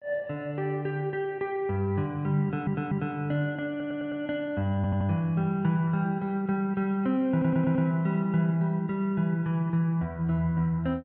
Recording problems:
audio stuttering; 4 times, first at 2.5 s

